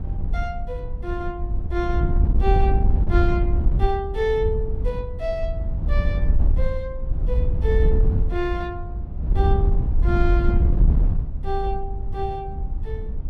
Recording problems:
wind on the microphone; below 74 Hz, SNR -5 dB

